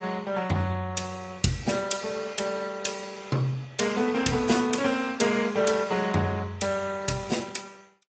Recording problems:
lossy compression; AAC, then Speex, log-spectral distance 6 dB, nothing above 7.8 kHz

